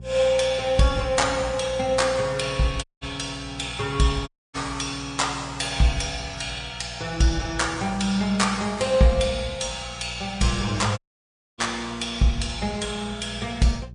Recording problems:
codec artefacts; MP3, log-spectral distance 4 dB, nothing above 9 kHz
hum; 60 Hz, harmonics up to 420 Hz, SNR 17 dB
dropout; at 3 s, at 4.5 s and at 11 s for 0.5 s

